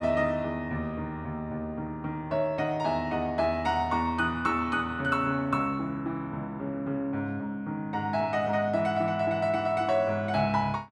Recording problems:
none

